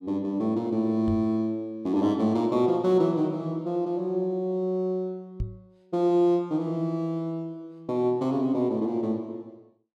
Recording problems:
knock on the microphone; at 1 s and at 5.5 s; peak -1 dB vs average level

